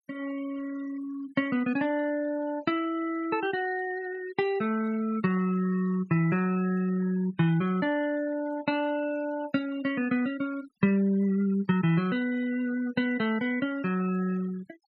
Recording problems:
denoising artefacts; signal-to-artefact ratio 20 dB

